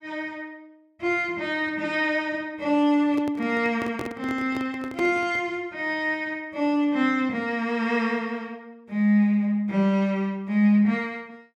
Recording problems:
handling noise; from 3 to 5.5 s; peak -4 dB vs average level

